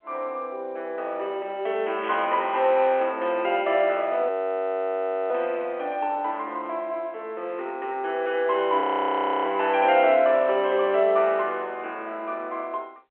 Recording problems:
telephone audio; 320 Hz to 3.6 kHz, G.711
static burst; at 2 s; peak -10 dB vs average level
frozen audio; at 4.5 s for 1 s and at 9 s for 0.5 s

